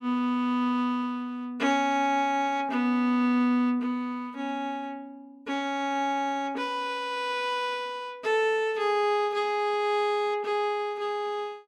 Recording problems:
none

